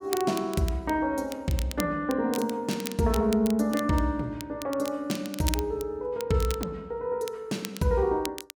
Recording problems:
crackling; vinyl, SNR 13 dB

